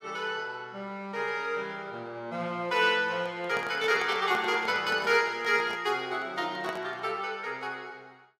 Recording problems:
handling noise; from 3 to 7 s; peak -5 dB vs average level

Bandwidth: 15 kHz